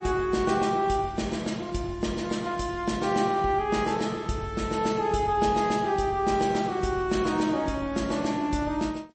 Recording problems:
lossy compression; MP3, log-spectral distance 3 dB, nothing above 8.2 kHz

